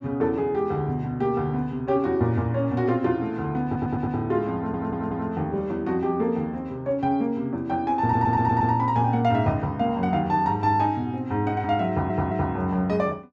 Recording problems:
stutter; 4 times, first at 3.5 s

